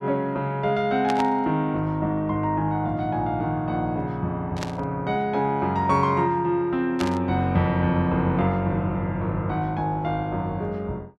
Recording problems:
burst of static; at 1 s, at 4.5 s and at 7 s; peak -3 dB vs average level

